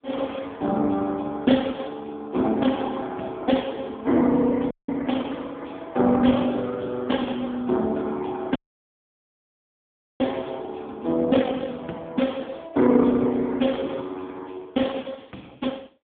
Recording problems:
phone line; 170 Hz to 3.5 kHz, AMR-NB
dropout; at 4.5 s and at 8.5 s for 1.5 s

